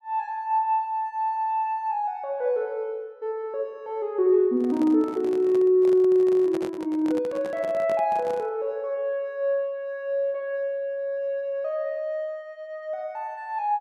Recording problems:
microphone handling noise; from 4.5 to 8.5 s; peak -7 dB vs average level

